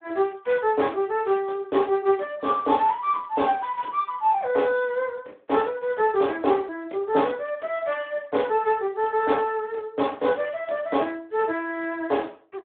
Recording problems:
phone line; 260 Hz to 3.4 kHz, Speex

